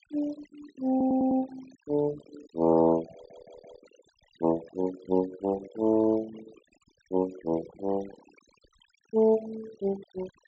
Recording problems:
treble missing; nothing above 8 kHz
noise reduction artefacts; signal-to-artefact ratio 20 dB
stutter; at 1 s and at 3 s

